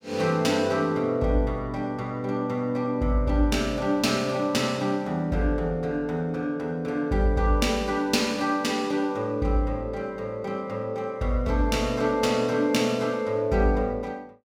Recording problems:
none

